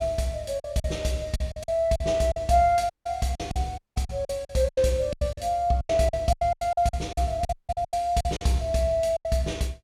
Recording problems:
lost packets; 15% of the sound replaced, filled with silence
audio cutting out; at 3 s, at 4 s and at 7.5 s

